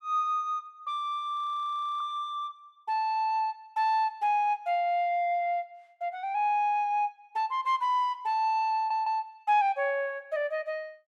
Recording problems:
audio freezing; at 1.5 s for 0.5 s
stutter; at 9 s

